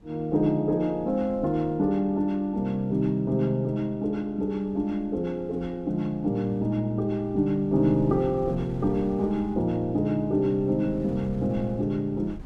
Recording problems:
wind on the microphone; below 200 Hz, SNR 19 dB

